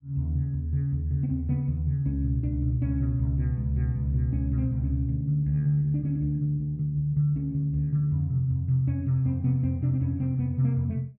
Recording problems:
none

